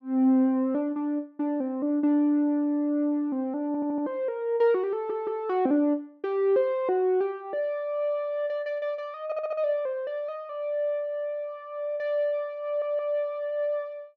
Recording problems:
audio stuttering; 4 times, first at 3.5 s

